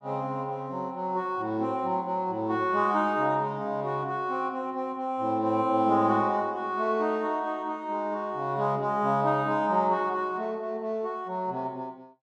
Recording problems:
none

